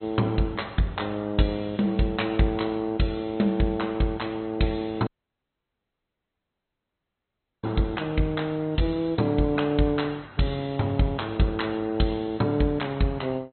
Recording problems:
treble cut off; nothing above 4.1 kHz
lossy codec; AAC, log-spectral distance 2 dB
audio cutting out; at 5 s for 2.5 s

